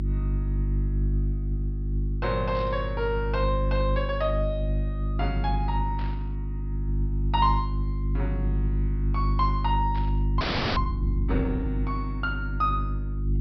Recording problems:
low-pass filter; nothing above 5.5 kHz
hum; 50 Hz, harmonics up to 350 Hz, SNR -2 dB
static burst; at 2.5 s, at 6 s and at 10 s; peak -10 dB vs average level
frozen audio; at 10 s

